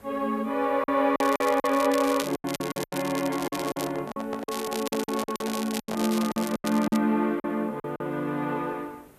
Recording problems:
hiss; slope -7 dB per octave, SNR 26 dB
lost packets; 12% of the sound replaced, filled with silence
crackle; from 1 to 4 s and from 4.5 to 7 s; loose cable, SNR 11 dB
microphone handling noise; from 3.5 to 7 s; peak -4 dB vs average level

